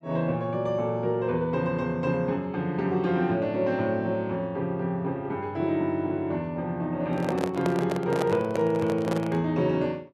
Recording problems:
microphone handling noise; from 7 to 9.5 s; peak +1 dB vs average level

